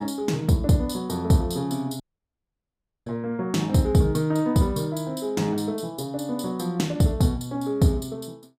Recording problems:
dropout; at 2 s for 1 s

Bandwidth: 15.5 kHz